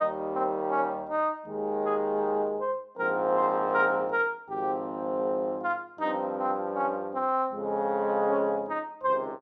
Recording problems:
none

